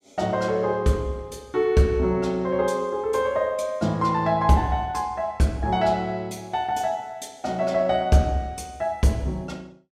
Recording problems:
none

